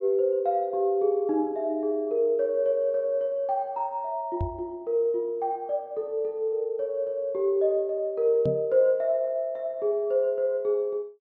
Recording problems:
microphone bump; at 4.5 s and at 8.5 s; peak -1 dB vs average level

